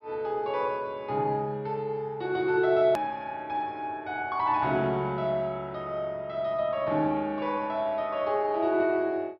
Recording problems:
treble cut off; nothing above 5.5 kHz
click at an edit; at 3 s

